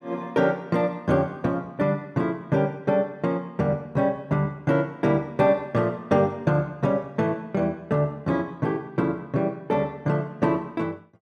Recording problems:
none

